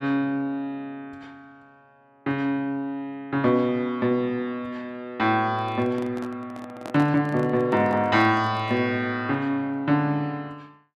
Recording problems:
microphone handling noise; from 5.5 to 9 s; peak -8 dB vs average level

